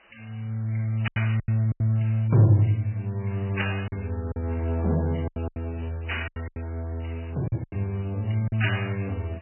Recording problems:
lossy codec; MP3, log-spectral distance 7 dB, nothing above 3 kHz
background hiss; SNR 28 dB
lost packets; 9% of the sound replaced, filled with silence

